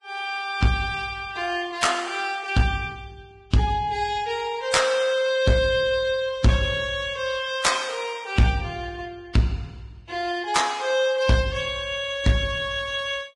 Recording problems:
codec artefacts; Vorbis, log-spectral distance 3 dB, nothing above 10.4 kHz
distorted audio; hard clipping, uneven, signal-to-distortion ratio 11 dB

